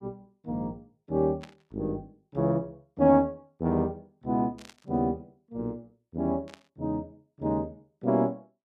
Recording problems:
static burst; at 1.5 s, at 4.5 s and at 6.5 s; peak -12 dB vs average level

